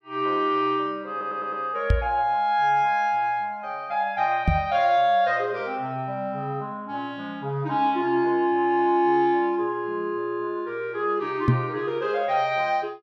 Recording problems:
audio stuttering; at 1 s
microphone bump; at 2 s, at 4.5 s and at 11 s; peak +8 dB vs average level

